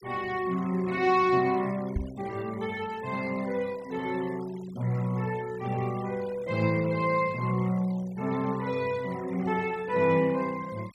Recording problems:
denoising artefacts; signal-to-artefact ratio 21 dB
knock on the microphone; at 2 s; peak +2 dB vs average level

